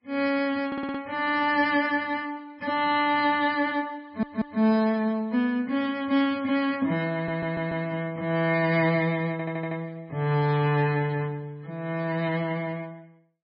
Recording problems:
lossy compression; MP3, then MP3, log-spectral distance 2 dB, nothing above 4.8 kHz
stutter; 4 times, first at 0.5 s

